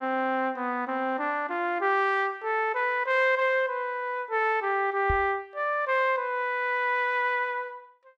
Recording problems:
microphone thump; at 5 s; peak -2 dB vs average level

